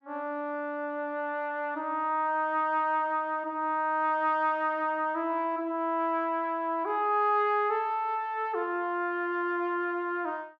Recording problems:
none

